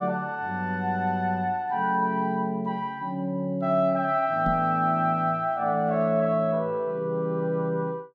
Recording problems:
microphone thump; at 4.5 s; peak -2 dB vs average level

